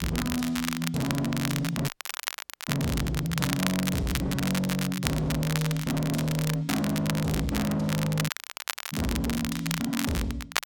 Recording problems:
distorted audio; hard clipping, signal-to-distortion ratio 7 dB
crackling; vinyl, SNR 5 dB
dropout; at 2 s for 1 s and at 8.5 s for 0.5 s

